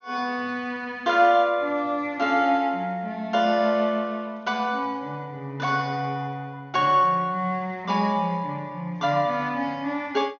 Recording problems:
low-pass filter; nothing above 6.5 kHz

